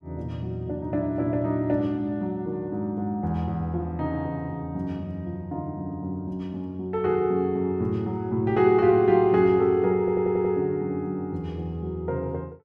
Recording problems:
audio stuttering; at 10 s

